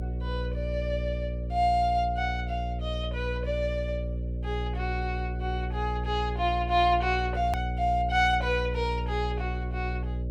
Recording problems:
hum; 60 Hz, harmonics up to 600 Hz, SNR 3 dB
edit click; at 7.5 s

